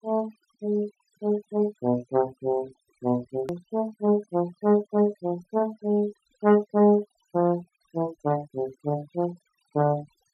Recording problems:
noise reduction artefacts; signal-to-artefact ratio 23 dB
edit click; at 3.5 s

